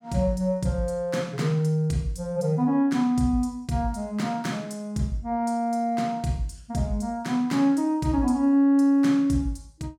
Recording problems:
none

